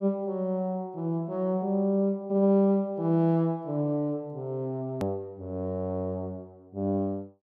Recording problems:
click at an edit; at 5 s

